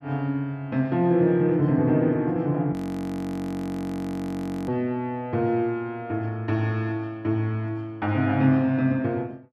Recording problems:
frozen audio; at 2.5 s for 2 s

